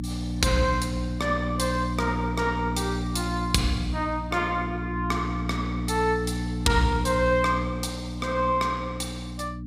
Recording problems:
hum; 60 Hz, harmonics up to 300 Hz, SNR 4 dB

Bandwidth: 15.5 kHz